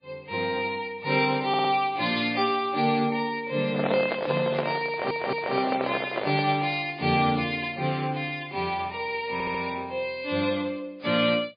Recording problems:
lossy compression; MP3, log-spectral distance 4 dB, nothing above 4.8 kHz
stutter; at 1.5 s, at 5 s and at 9.5 s
microphone handling noise; from 3.5 to 6.5 s; peak +2 dB vs average level

